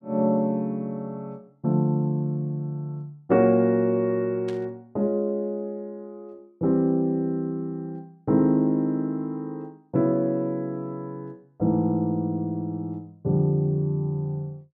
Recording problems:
burst of static; at 4.5 s; peak -14 dB vs average level

